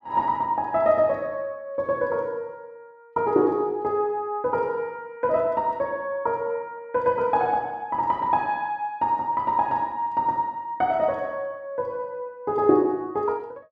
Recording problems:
none

